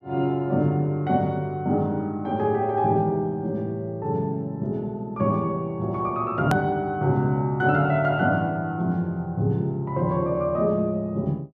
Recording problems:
hard cut with a click; at 6.5 s

